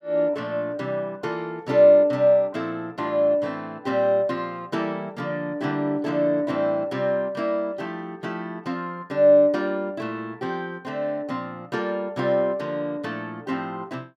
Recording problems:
none

